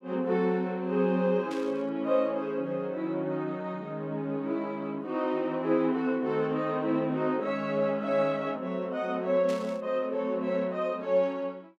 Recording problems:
burst of static; at 1.5 s and at 9.5 s; peak -10 dB vs average level

